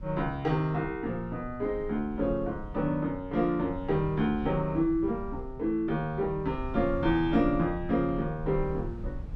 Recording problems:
rumble; below 96 Hz, SNR 13 dB

